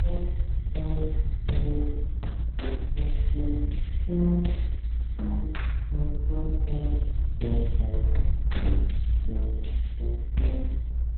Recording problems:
lossy codec; Opus, log-spectral distance 2 dB, nothing above 4 kHz
rumble; below 60 Hz, strongest tone 56 Hz, SNR -5 dB

